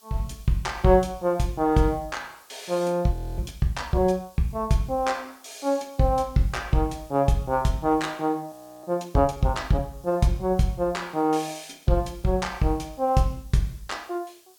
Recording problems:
hiss; SNR 28 dB
audio freezing; at 3 s and at 8.5 s

